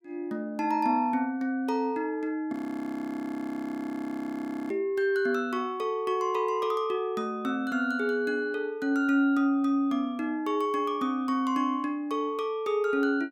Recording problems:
frozen audio; at 2.5 s for 2 s

